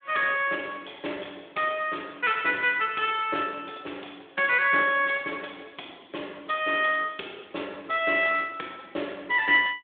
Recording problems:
telephone audio; 320 Hz to 3.6 kHz, Speex

